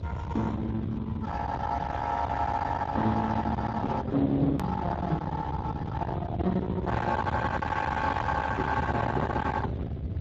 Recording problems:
lossy compression; Speex, log-spectral distance 3 dB
distortion; soft clipping, signal-to-distortion ratio 6 dB
electrical hum; 60 Hz, harmonics up to 660 Hz, SNR 24 dB
low-frequency rumble; below 880 Hz, SNR 5 dB
click at an edit; at 4.5 s

